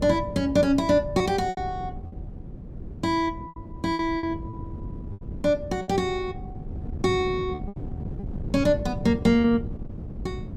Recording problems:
wind on the microphone; below 200 Hz, SNR 11 dB
packet loss; 7% of the sound replaced, filled with repeated pitch periods

